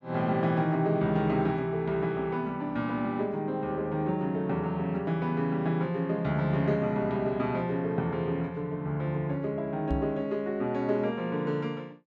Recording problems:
knock on the microphone; at 10 s; peak +2 dB vs average level

